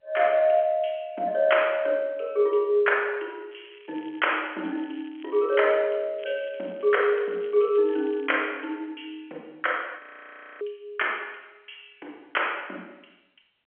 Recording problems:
telephone audio; 280 Hz to 3.3 kHz, G.711
crackling; from 3.5 to 6 s and from 6 to 8.5 s; loose cable, SNR 27 dB
audio freezing; at 10 s for 0.5 s

